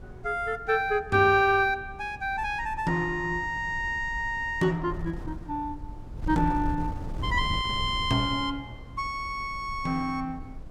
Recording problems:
wind noise; below 120 Hz, SNR 12 dB

